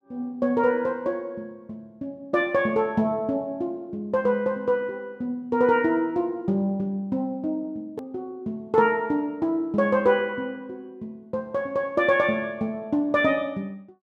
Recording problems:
click at an edit; at 8 s

